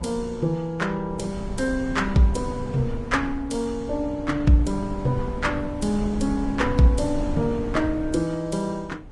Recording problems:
lossy codec; Vorbis, log-spectral distance 2 dB, nothing above 10.4 kHz
wind noise; below 180 Hz, SNR 9 dB

